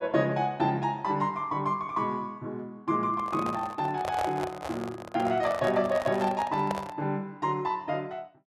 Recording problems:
microphone handling noise; from 3 to 7 s; peak 0 dB vs average level

